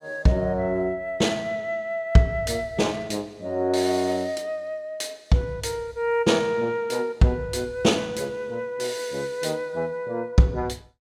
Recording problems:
none

